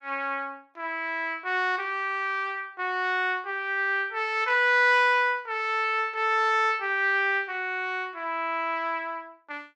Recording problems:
none

